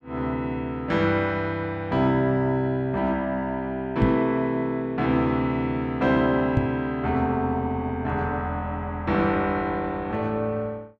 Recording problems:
knock on the microphone; at 4 s and at 6.5 s; peak +6 dB vs average level

